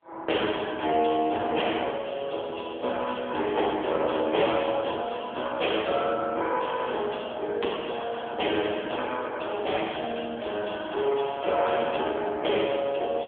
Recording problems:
phone line; 280 Hz to 3.3 kHz, AMR-NB

